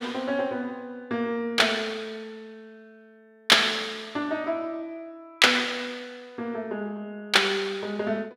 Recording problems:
none

